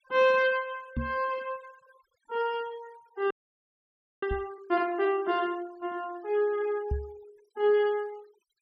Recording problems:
noise reduction artefacts; signal-to-artefact ratio 25 dB
microphone thump; at 1 s, at 4.5 s and at 7 s; peak +1 dB vs average level
frozen audio; at 3.5 s for 1 s

